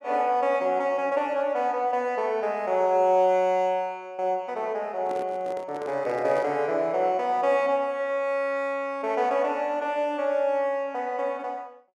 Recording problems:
microphone handling noise; from 5 to 6.5 s; peak -9 dB vs average level

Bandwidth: 12 kHz